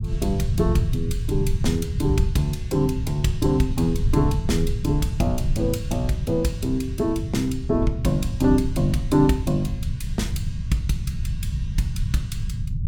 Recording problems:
low-frequency rumble; below 120 Hz, SNR 3 dB

